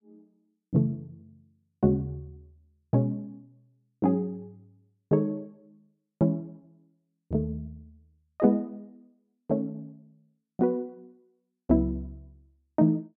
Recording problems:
none

